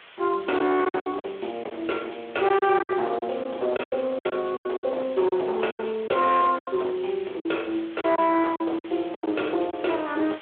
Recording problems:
telephone audio; 280 Hz to 3.6 kHz, Speex
distortion; hard clipping, uneven, signal-to-distortion ratio 13 dB
background hiss; SNR 21 dB
lost packets; 11% of the sound replaced, filled with silence

